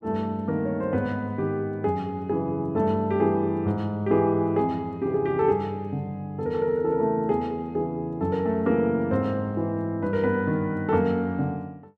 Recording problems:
none

